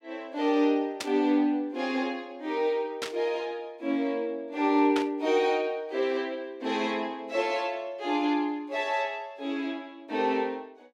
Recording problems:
burst of static; at 1 s, at 3 s and at 5 s; peak 0 dB vs average level

